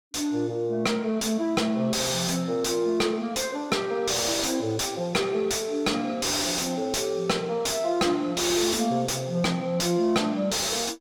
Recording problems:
distorted audio; soft clipping, signal-to-distortion ratio 6 dB

